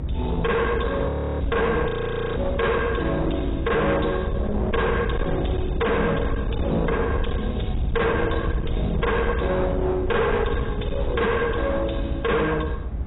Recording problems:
lossy compression; AAC, log-spectral distance 4 dB, nothing above 3.8 kHz
distortion; hard clipping, uneven, signal-to-distortion ratio 6 dB
rumble; below 140 Hz, SNR 4 dB
wind noise; below 370 Hz, SNR 14 dB
frozen audio; at 1 s and at 2 s

